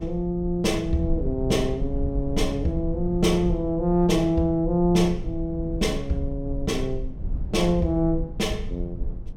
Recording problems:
rumble; below 72 Hz, SNR 8 dB

